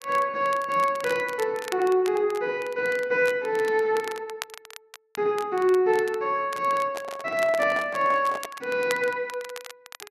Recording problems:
crackling; vinyl, SNR 17 dB
microphone handling noise; from 7 to 8.5 s; peak -5 dB vs average level

